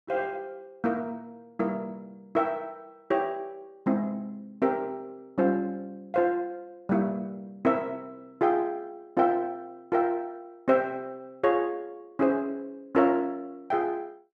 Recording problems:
none

